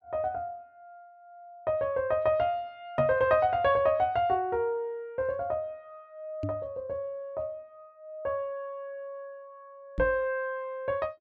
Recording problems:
knock on the microphone; at 3 s, at 6.5 s and at 10 s; peak 0 dB vs average level

